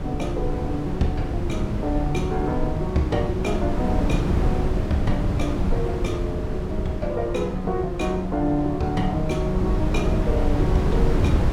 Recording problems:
wind noise; below 170 Hz, SNR 0 dB

